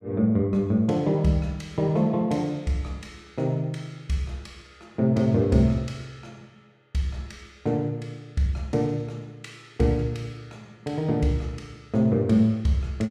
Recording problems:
none

